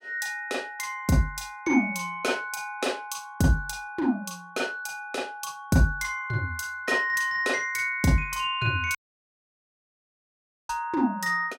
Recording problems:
audio cutting out; at 9 s for 1.5 s

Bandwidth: 16 kHz